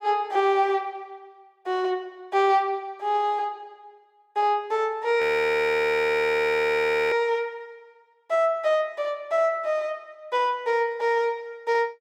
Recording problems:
frozen audio; at 5 s for 2 s

